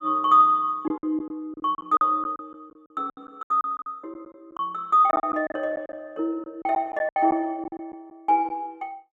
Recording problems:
packet loss; 12% of the sound replaced, filled with silence

